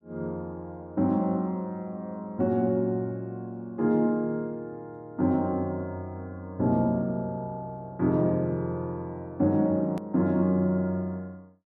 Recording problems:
click at an edit; at 10 s

